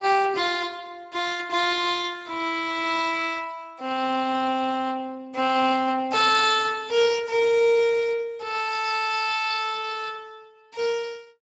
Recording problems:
codec artefacts; Speex, log-spectral distance 5 dB, nothing above 7.3 kHz

